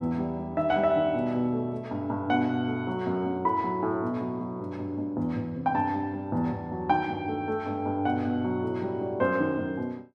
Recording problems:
none

